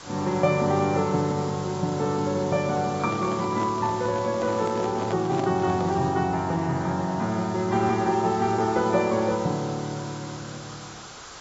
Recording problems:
lossy codec; AAC, log-spectral distance 10 dB
hiss; SNR 16 dB
microphone handling noise; from 3 to 6 s; peak -3 dB vs average level

